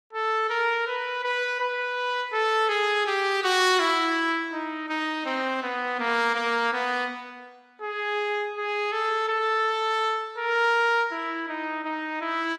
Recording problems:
codec artefacts; AAC, log-spectral distance 2 dB, nothing above 14.3 kHz

